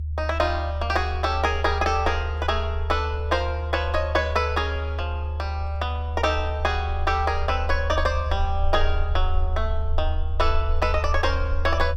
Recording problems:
low-frequency rumble; below 76 Hz, SNR 2 dB

